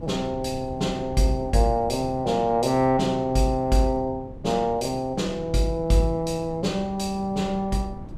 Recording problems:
wind noise; below 220 Hz, SNR 16 dB

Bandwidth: 15.5 kHz